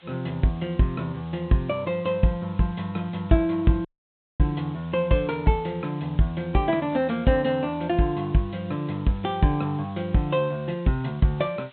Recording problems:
treble cut off; nothing above 3.9 kHz
background hiss; SNR 27 dB
dropout; at 4 s for 0.5 s

